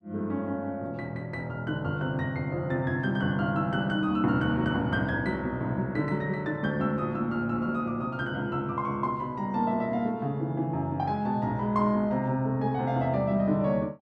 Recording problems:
none

